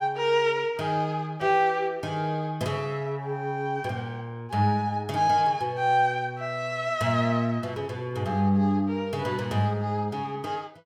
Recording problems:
none

